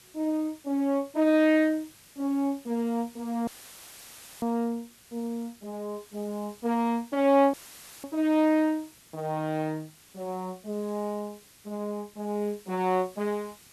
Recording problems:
background hiss; slope 0 dB per octave, SNR 24 dB
dropout; at 3.5 s for 1 s and at 7.5 s; filled with static

